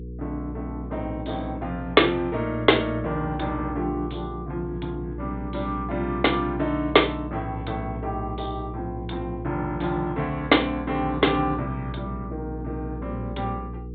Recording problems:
low-pass filter; nothing above 4 kHz
hum; 60 Hz, harmonics up to 480 Hz, SNR 9 dB

